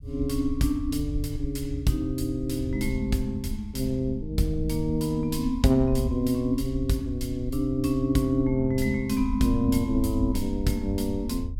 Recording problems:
low-frequency rumble; below 80 Hz, SNR 9 dB

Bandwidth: 16.5 kHz